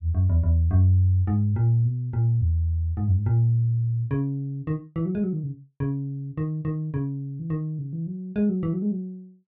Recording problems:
none

